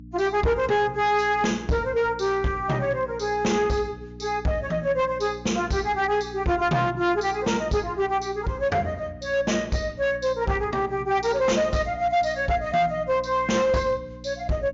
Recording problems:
treble cut off; nothing above 7.2 kHz
distortion; hard clipping, signal-to-distortion ratio 12 dB
hum; 60 Hz, harmonics up to 300 Hz, SNR 18 dB

